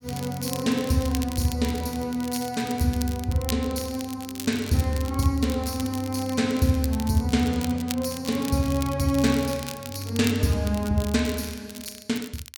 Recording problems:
crackle; vinyl, SNR 13 dB

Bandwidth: 18 kHz